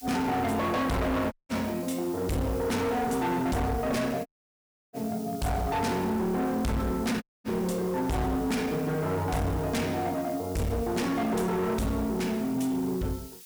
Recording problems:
distortion; hard clipping, signal-to-distortion ratio 7 dB
background hiss; slope +4 dB per octave, SNR 18 dB
dropout; at 1.5 s, at 4.5 s for 0.5 s and at 7 s

